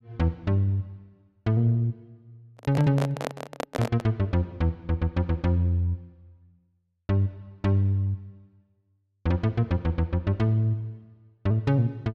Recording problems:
handling noise; from 2.5 to 4 s; peak 0 dB vs average level

